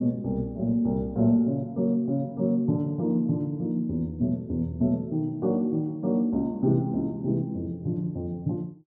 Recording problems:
none

